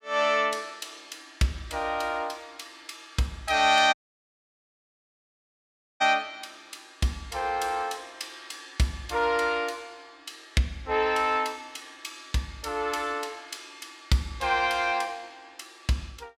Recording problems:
audio cutting out; at 4 s for 2 s

